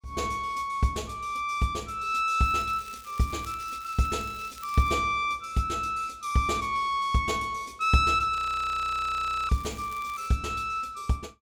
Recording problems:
crackle; from 2.5 to 5 s and at 9.5 s; loose cable, SNR 22 dB
audio freezing; at 8.5 s for 1 s

